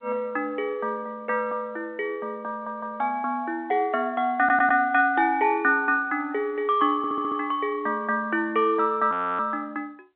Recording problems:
phone line; 300 Hz to 3.6 kHz, G.711
stutter; at 2.5 s, at 4.5 s and at 7 s
frozen audio; at 9 s

